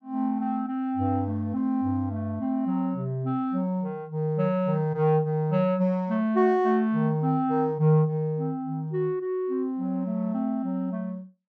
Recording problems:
none

